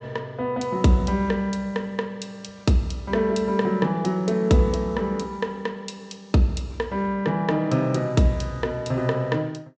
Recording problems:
treble cut off; nothing above 8 kHz

